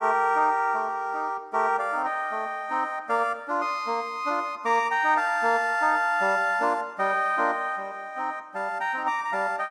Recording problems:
none

